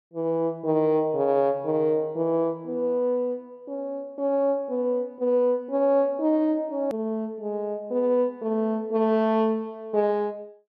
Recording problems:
edit click; at 7 s

